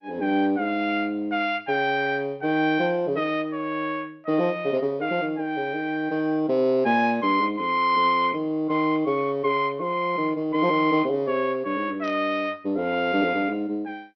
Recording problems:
codec artefacts; MP2, log-spectral distance 2 dB, nothing above 4.9 kHz
burst of static; at 12 s; peak -16 dB vs average level

